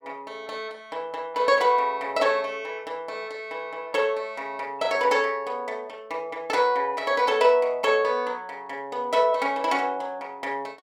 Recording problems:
none

